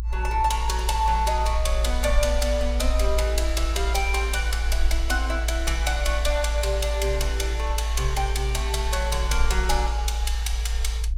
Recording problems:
low-frequency rumble; below 58 Hz, strongest tone 56 Hz, SNR 0 dB

